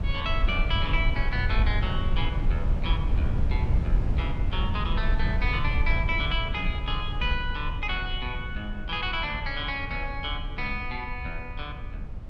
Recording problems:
rumble; below 80 Hz, SNR -1 dB

